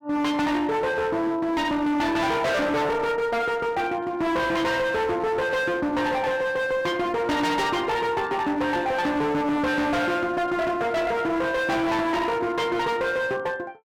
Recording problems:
distorted audio; hard clipping, uneven, signal-to-distortion ratio 7 dB

